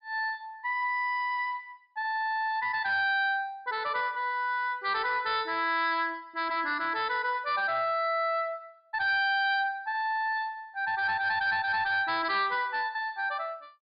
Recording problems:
treble missing; nothing above 5 kHz
distortion; hard clipping, signal-to-distortion ratio 11 dB

